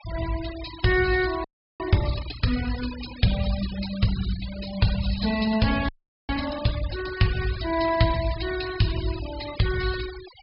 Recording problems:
low-pass filter; nothing above 5.5 kHz
denoising artefacts; signal-to-artefact ratio 13 dB
audio freezing; at 1.5 s and at 6 s

